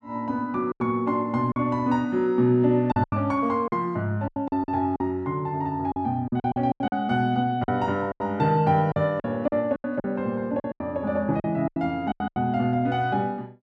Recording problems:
lost packets; 11% of the sound replaced, filled with silence

